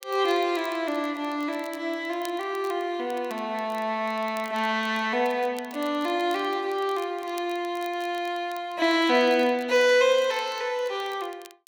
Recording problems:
crackling; vinyl, SNR 24 dB

